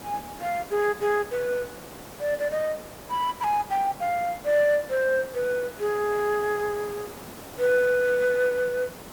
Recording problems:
background hiss; slope -6 dB per octave, SNR 16 dB

